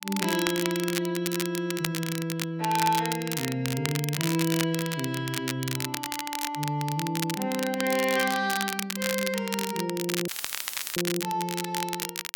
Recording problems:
crackling; vinyl, SNR 4 dB
audio cutting out; at 10 s for 0.5 s; filled with static

